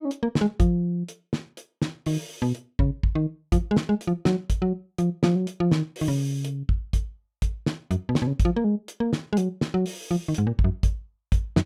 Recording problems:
none

